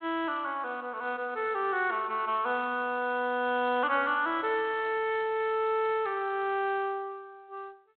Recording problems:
telephone audio; 260 Hz to 3.9 kHz, G.726

